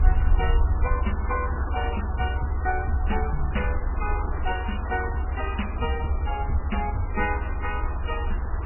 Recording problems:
lossy codec; MP3, log-spectral distance 11 dB, nothing above 2.9 kHz
hiss; SNR 8 dB
low-frequency rumble; below 78 Hz, SNR -2 dB
crackle; at 0.5 s; loose cable, SNR 27 dB

